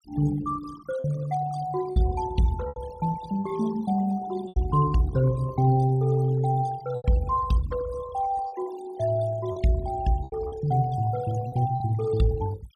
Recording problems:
noise reduction artefacts; signal-to-artefact ratio 16 dB
packet loss; 5% of the sound replaced, filled with repeated pitch periods

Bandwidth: 15 kHz